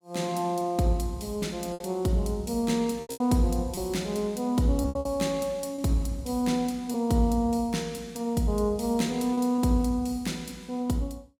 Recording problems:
lost packets; 5% of the sound replaced, filled with repeated pitch periods

